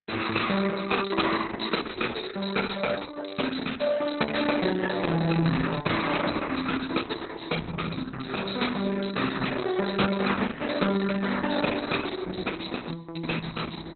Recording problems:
lossy compression; Opus, log-spectral distance 10 dB, nothing above 4.1 kHz

